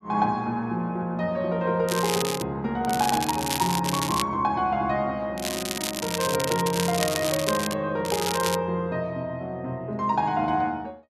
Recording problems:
crackle; 4 times, first at 2 s; loose cable, SNR 4 dB

